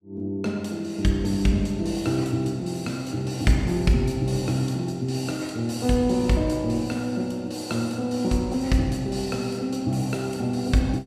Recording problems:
none

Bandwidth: 14.5 kHz